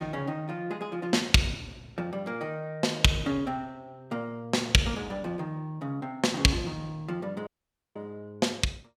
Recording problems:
dropout; at 7.5 s

